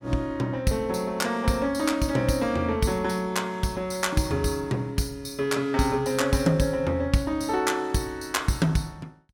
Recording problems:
none

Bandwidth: 17 kHz